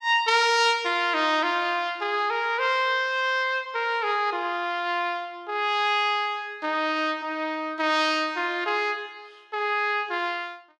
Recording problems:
none

